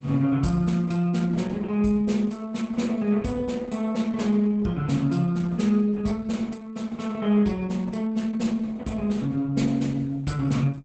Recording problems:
codec artefacts; Opus, log-spectral distance 3 dB, nothing above 8 kHz

